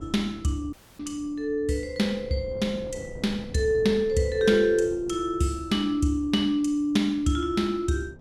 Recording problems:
wind noise; below 310 Hz, SNR 19 dB
dropout; at 0.5 s

